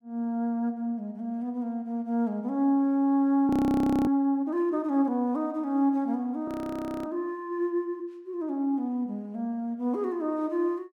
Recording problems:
frozen audio; at 3.5 s for 0.5 s and at 6.5 s for 0.5 s

